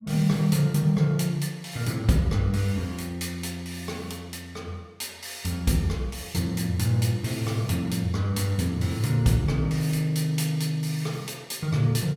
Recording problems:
none

